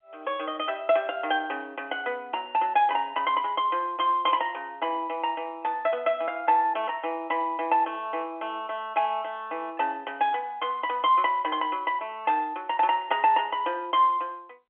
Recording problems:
phone line; 190 Hz to 3.3 kHz, G.711

